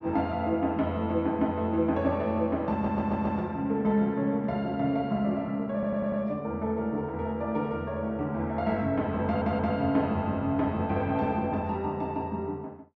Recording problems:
audio stuttering; at 2.5 s, at 5.5 s and at 9.5 s

